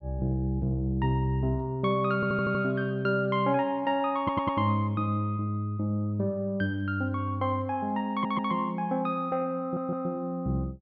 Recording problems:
audio stuttering; 4 times, first at 2 s

